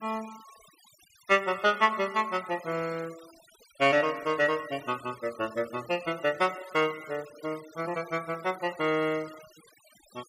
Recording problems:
denoising artefacts; signal-to-artefact ratio 20 dB

